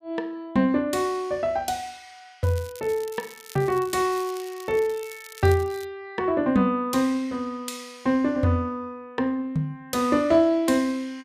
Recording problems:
crackling; from 2.5 to 6 s; loose cable, SNR 20 dB

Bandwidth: 15 kHz